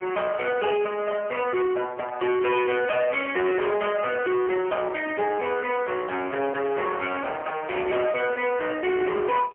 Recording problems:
phone line; 320 Hz to 3.3 kHz, AMR-NB, then MP3
distorted audio; soft clipping, signal-to-distortion ratio 7 dB

